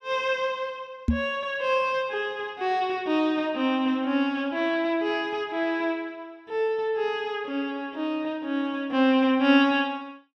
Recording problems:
knock on the microphone; at 1 s; peak +6 dB vs average level

